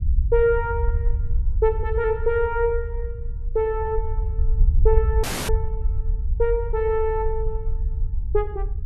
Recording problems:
rumble; below 66 Hz, SNR 2 dB
dropout; at 5 s

